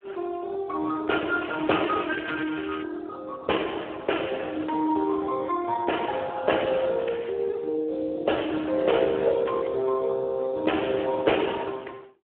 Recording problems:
telephone audio; 260 Hz to 3.2 kHz, Speex
crackling; from 1.5 to 3 s; loose cable, SNR 15 dB

